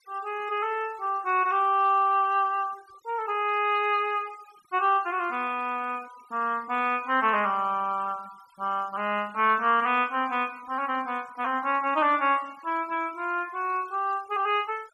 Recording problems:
noise reduction artefacts; signal-to-artefact ratio 26 dB

